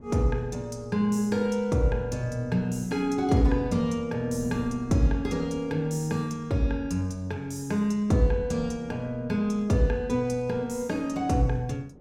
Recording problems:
wind on the microphone; below 280 Hz, SNR 20 dB

